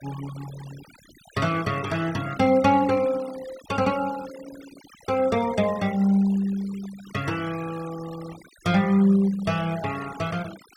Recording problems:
noise reduction artefacts; signal-to-artefact ratio 19 dB

